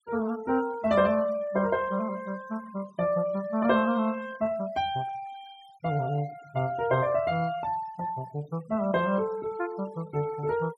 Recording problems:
noise reduction artefacts; signal-to-artefact ratio 23 dB

